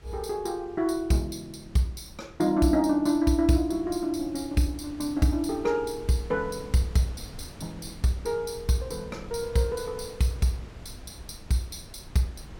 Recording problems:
wind noise; below 310 Hz, SNR 18 dB

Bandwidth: 17 kHz